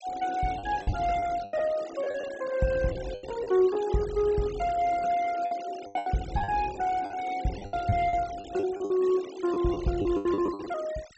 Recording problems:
low-pass filter; nothing above 7.9 kHz
denoising artefacts; signal-to-artefact ratio 18 dB
packet loss; 12% of the sound replaced, filled with the last packet

